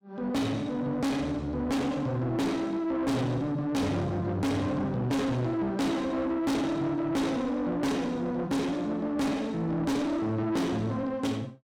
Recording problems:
distorted audio; soft clipping, signal-to-distortion ratio 6 dB

